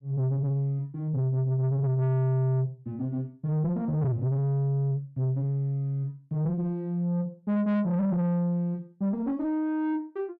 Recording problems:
distortion; soft clipping, signal-to-distortion ratio 7 dB

